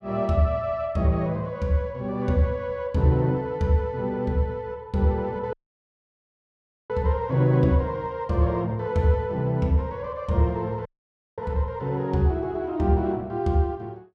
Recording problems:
audio cutting out; at 5.5 s for 1.5 s and at 11 s for 0.5 s

